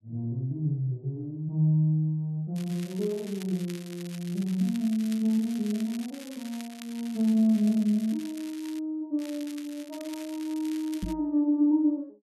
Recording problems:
crackling; from 2.5 to 9 s and from 9 to 11 s; loose cable, SNR 18 dB
microphone thump; at 11 s; peak -1 dB vs average level

